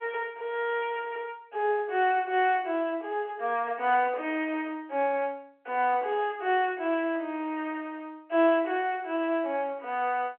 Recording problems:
telephone audio; 280 Hz to 3.2 kHz, G.711

